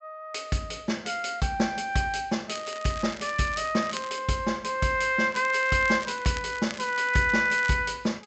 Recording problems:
treble missing; nothing above 7.9 kHz
crackle; from 2.5 to 4 s and from 5.5 to 7.5 s; loose cable, SNR 17 dB

